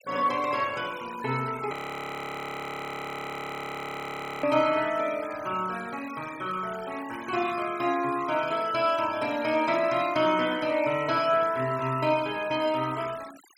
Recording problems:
denoising artefacts; signal-to-artefact ratio 17 dB
frozen audio; at 1.5 s for 2.5 s

